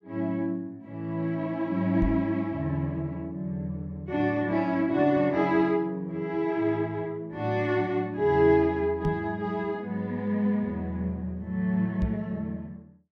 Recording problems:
knock on the microphone; at 2 s, at 9 s and at 12 s; peak +2 dB vs average level

